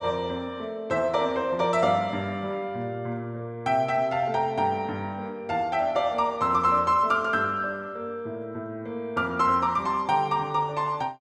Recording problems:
none

